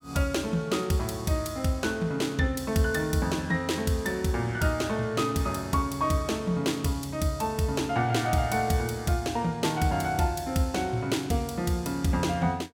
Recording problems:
none

